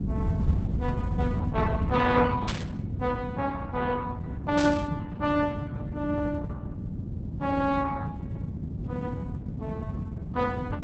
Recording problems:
lossy codec; Opus, log-spectral distance 2 dB
low-frequency rumble; below 180 Hz, SNR 2 dB
burst of static; at 2.5 s and at 4.5 s; peak 0 dB vs average level

